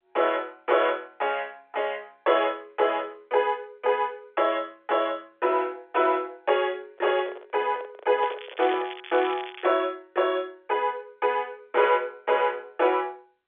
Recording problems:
telephone audio; 320 Hz to 3.5 kHz, G.711
microphone handling noise; from 7 to 9 s; peak -6 dB vs average level
crackling; from 8 to 9.5 s; loose cable, SNR 15 dB

